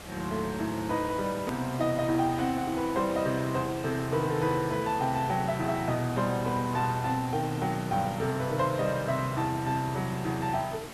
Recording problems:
hiss; slope -4 dB per octave, SNR 13 dB
hard cut with a click; at 1.5 s

